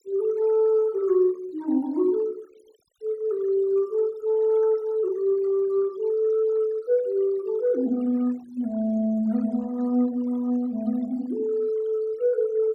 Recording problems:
noise reduction artefacts; signal-to-artefact ratio 26 dB

